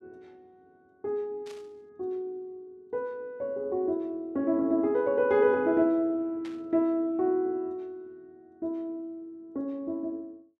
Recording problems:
burst of static; at 1.5 s and at 6.5 s; peak -14 dB vs average level

